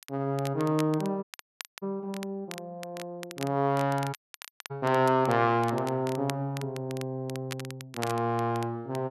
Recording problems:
crackling; vinyl, SNR 15 dB
dropout; at 1 s for 0.5 s and at 4 s for 0.5 s

